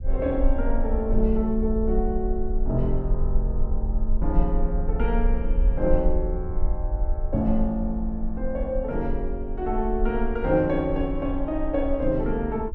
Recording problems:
low-frequency rumble; below 48 Hz, strongest tone 22 Hz, SNR 2 dB

